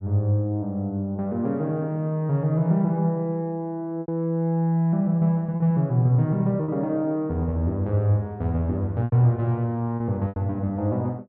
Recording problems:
packet loss; 3% of the sound replaced, filled with repeated pitch periods

